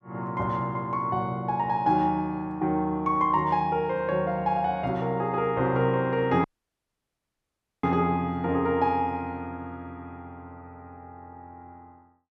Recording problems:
dropout; at 6.5 s for 1.5 s

